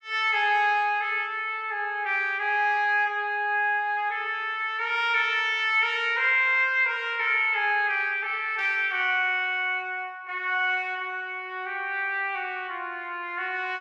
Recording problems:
none

